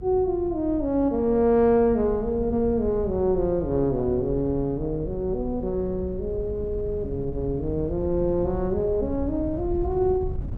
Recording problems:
hum; 50 Hz, harmonics up to 450 Hz, SNR 18 dB
wind on the microphone; below 110 Hz, SNR 13 dB

